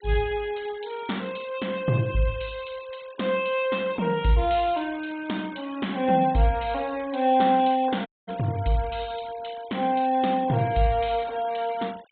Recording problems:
treble cut off; nothing above 4 kHz
noise reduction artefacts; signal-to-artefact ratio 22 dB
audio cutting out; at 8 s

